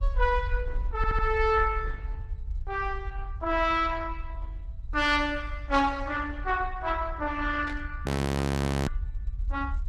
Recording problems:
lossy compression; Opus, log-spectral distance 2 dB, nothing above 12 kHz
low-frequency rumble; below 140 Hz, SNR 6 dB
audio stuttering; at 1 s
burst of static; at 7.5 s; peak -11 dB vs average level
frozen audio; at 8 s for 1 s

